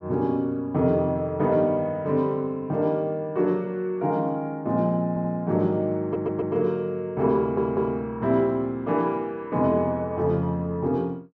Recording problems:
stutter; at 5 s, at 6 s and at 7.5 s

